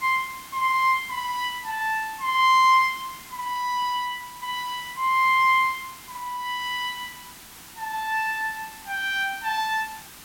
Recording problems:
background hiss; SNR 18 dB

